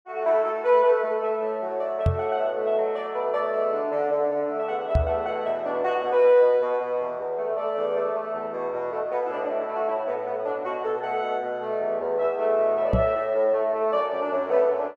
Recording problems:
microphone bump; at 2 s, at 5 s and at 13 s; peak +5 dB vs average level

